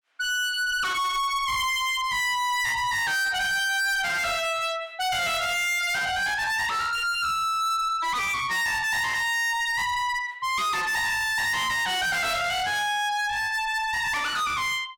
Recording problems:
distortion; soft clipping, signal-to-distortion ratio 6 dB

